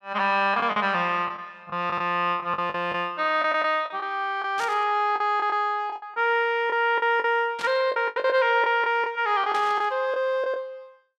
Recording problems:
packet loss; 10% of the sound replaced, filled with the last packet
static burst; at 4.5 s, at 7.5 s and at 9.5 s; peak -7 dB vs average level

